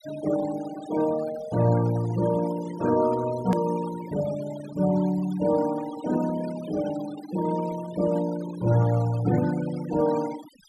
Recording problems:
noise reduction artefacts; signal-to-artefact ratio 15 dB
click at an edit; at 3.5 s

